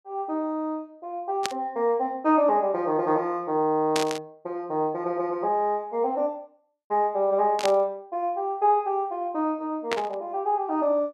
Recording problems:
burst of static; 4 times, first at 1.5 s; peak +2 dB vs average level

